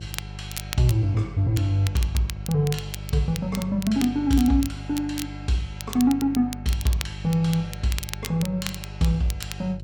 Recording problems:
electrical hum; 50 Hz, harmonics up to 550 Hz, SNR 12 dB
crackle; vinyl, SNR 13 dB

